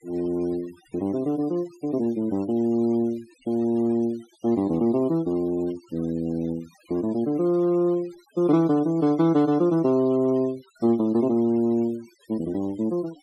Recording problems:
noise reduction artefacts; signal-to-artefact ratio 25 dB

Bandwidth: 13 kHz